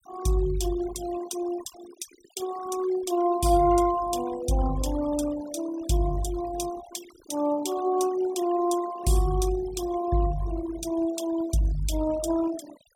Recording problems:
noise reduction artefacts; signal-to-artefact ratio 16 dB

